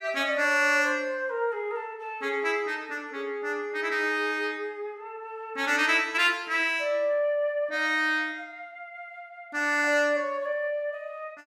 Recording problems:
none

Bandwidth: 14.5 kHz